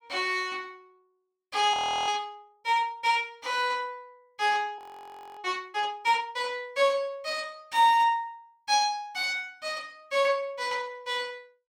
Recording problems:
audio freezing; at 1.5 s and at 5 s for 0.5 s

